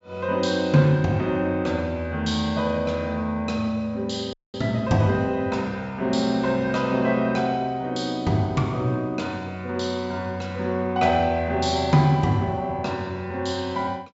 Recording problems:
treble cut off; nothing above 8 kHz
audio cutting out; at 4.5 s

